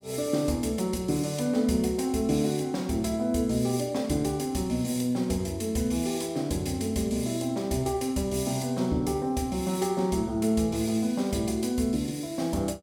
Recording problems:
none

